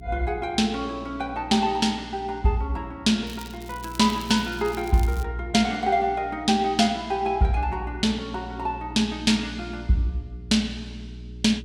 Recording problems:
hum; 60 Hz, harmonics up to 420 Hz, SNR 16 dB
crackling; from 3.5 to 5 s; loose cable, SNR 20 dB

